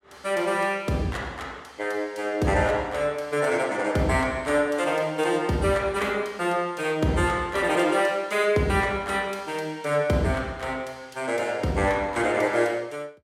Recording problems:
none

